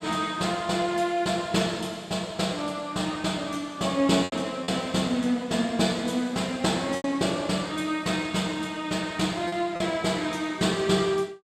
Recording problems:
lost packets; 2% of the sound replaced, filled with repeated pitch periods

